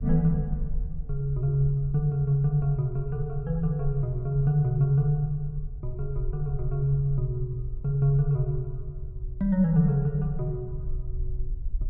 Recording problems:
rumble; below 52 Hz, SNR 11 dB

